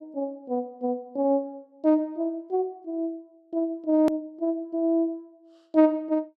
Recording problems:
click at an edit; at 4 s

